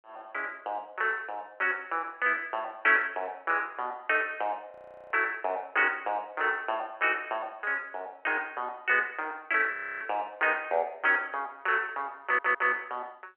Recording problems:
phone line; 320 Hz to 3.1 kHz, G.711
frozen audio; at 4.5 s and at 9.5 s
stutter; at 12 s

